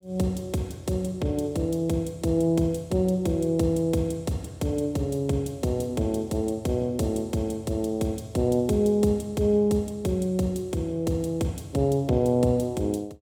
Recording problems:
none

